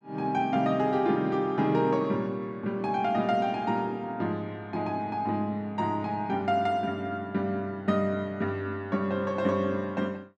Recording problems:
none

